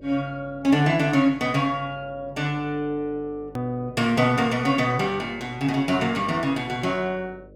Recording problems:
hum; 50 Hz, harmonics up to 600 Hz, SNR 24 dB
edit click; at 3.5 s

